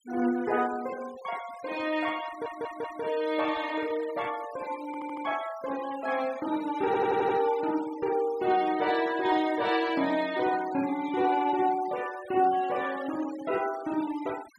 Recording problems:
noise reduction artefacts; signal-to-artefact ratio 17 dB
stutter; at 2.5 s, at 5 s and at 7 s

